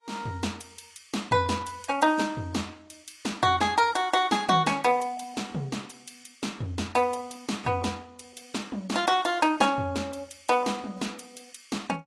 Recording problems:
codec artefacts; AAC, log-spectral distance 5 dB, nothing above 11.6 kHz

